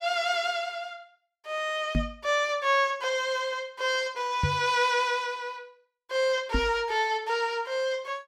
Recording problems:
knock on the microphone; at 2 s, at 4.5 s and at 6.5 s; peak +4 dB vs average level

